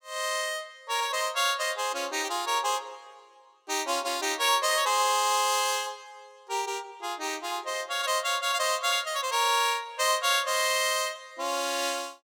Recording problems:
none

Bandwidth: 17.5 kHz